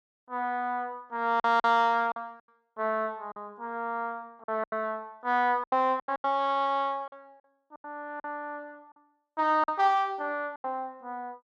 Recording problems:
packet loss; 9% of the sound replaced, filled with silence

